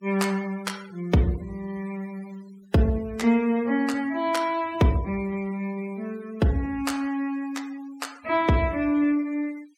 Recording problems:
denoising artefacts; signal-to-artefact ratio 22 dB

